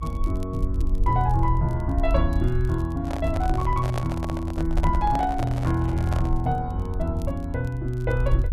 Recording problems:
rumble; below 58 Hz, SNR 4 dB
crackling; vinyl, SNR 29 dB
microphone handling noise; from 3 to 6.5 s; peak -2 dB vs average level

